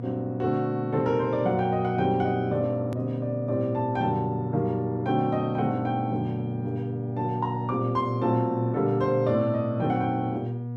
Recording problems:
electrical hum; 60 Hz, harmonics up to 720 Hz, SNR 6 dB
click at an edit; at 3 s

